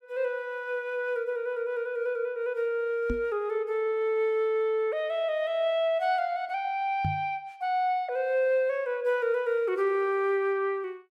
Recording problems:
microphone bump; at 3 s and at 7 s; peak +1 dB vs average level

